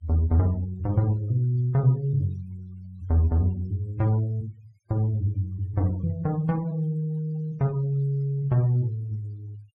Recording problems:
noise reduction artefacts; signal-to-artefact ratio 26 dB

